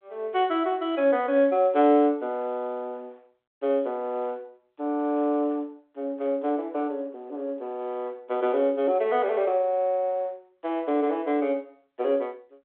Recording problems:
phone line; 240 Hz to 3.7 kHz, G.726

